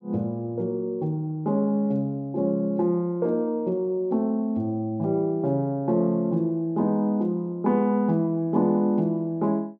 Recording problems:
none

